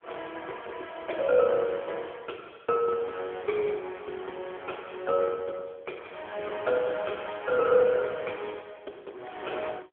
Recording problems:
telephone audio; 320 Hz to 3.4 kHz, AMR-NB

